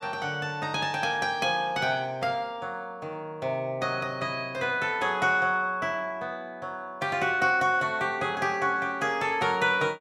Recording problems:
none

